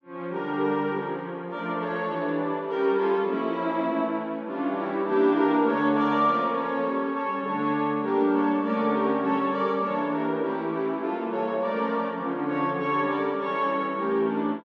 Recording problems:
none

